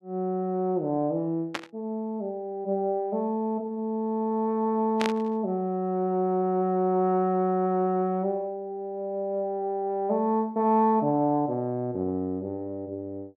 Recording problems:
burst of static; at 1.5 s and at 5 s; peak +1 dB vs average level

